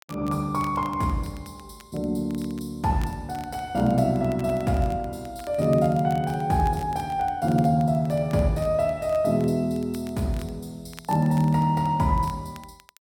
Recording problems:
crackling; vinyl, SNR 25 dB

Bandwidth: 17 kHz